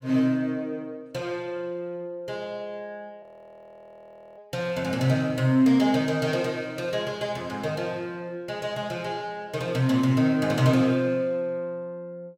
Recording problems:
audio freezing; at 3 s for 1 s

